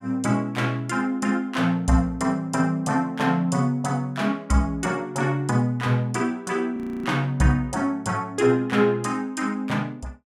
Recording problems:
frozen audio; at 7 s

